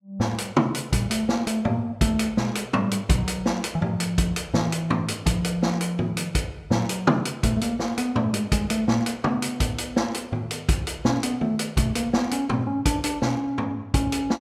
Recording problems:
none

